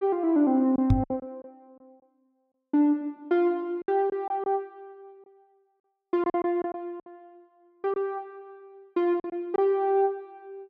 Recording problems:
lost packets; 7% of the sound replaced, filled with silence
microphone bump; at 1 s; peak +8 dB vs average level

